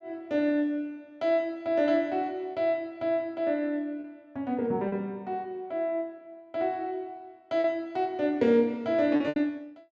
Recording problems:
packet loss; 3% of the sound replaced, filled with repeated pitch periods

